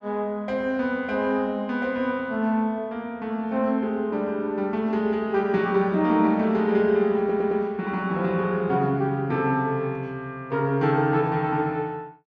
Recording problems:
stutter; at 7 s

